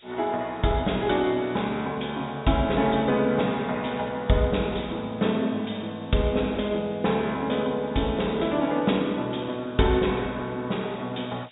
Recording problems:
low-pass filter; nothing above 4 kHz
background hiss; SNR 27 dB

